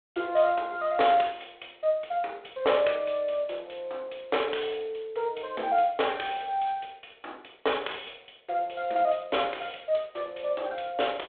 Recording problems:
phone line; 340 Hz to 3.6 kHz, G.726

